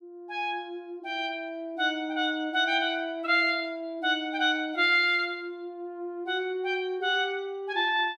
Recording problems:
none

